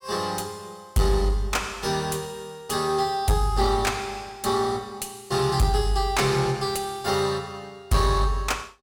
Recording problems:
distortion; soft clipping, signal-to-distortion ratio 10 dB

